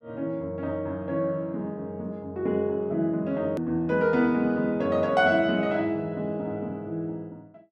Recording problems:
edit click; at 3.5 s

